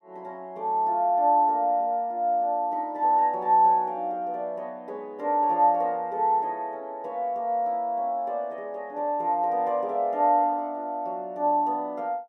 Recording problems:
none

